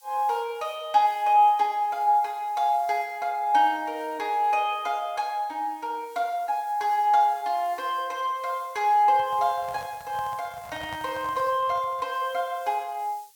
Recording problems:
background hiss; slope +5 dB per octave, SNR 27 dB
handling noise; from 9 to 12 s; peak -10 dB vs average level

